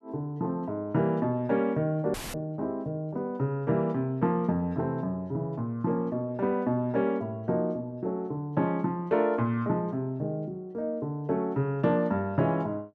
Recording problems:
dropout; at 2 s; filled with static

